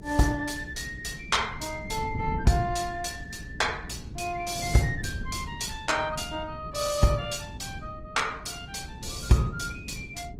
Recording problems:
codec artefacts; Opus, log-spectral distance 4 dB, nothing above 18.9 kHz
hum; 60 Hz, harmonics up to 420 Hz, SNR 20 dB
wind on the microphone; below 180 Hz, SNR 12 dB

